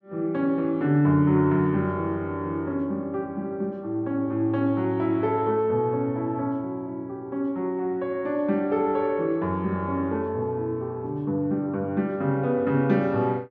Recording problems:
none

